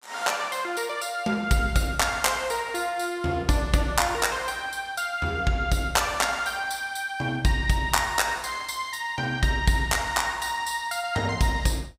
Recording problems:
none

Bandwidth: 15.5 kHz